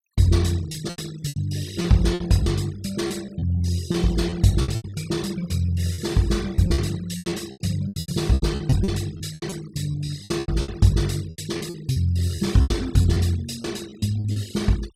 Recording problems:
noise reduction artefacts; signal-to-artefact ratio 20 dB
lost packets; 14% of the sound replaced, filled with repeated pitch periods

